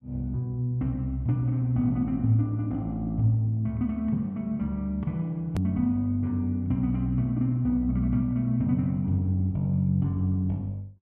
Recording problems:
hard cut with a click; at 5.5 s

